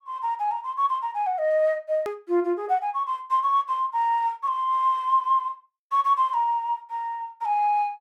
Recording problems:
edit click; at 2 s

